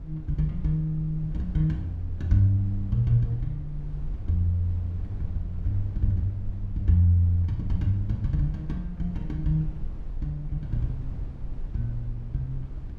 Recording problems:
low-frequency rumble; below 66 Hz, SNR 11 dB

